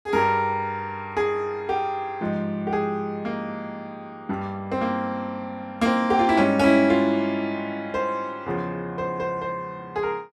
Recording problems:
none

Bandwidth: 13 kHz